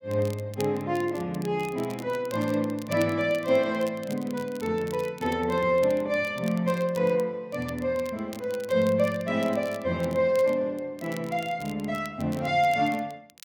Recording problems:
crackle; vinyl, SNR 21 dB

